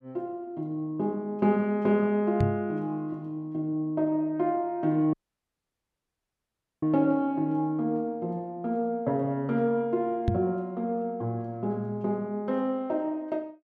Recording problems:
microphone thump; at 2.5 s and at 10 s; peak +6 dB vs average level
audio cutting out; at 5 s for 1.5 s

